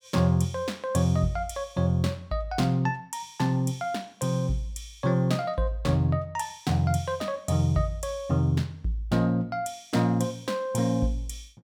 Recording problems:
none

